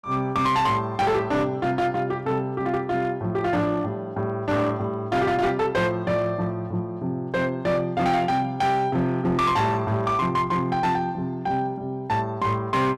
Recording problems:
distortion; hard clipping, signal-to-distortion ratio 11 dB

